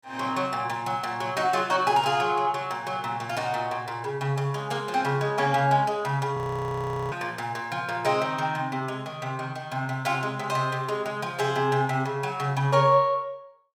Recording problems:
frozen audio; at 6.5 s for 1 s

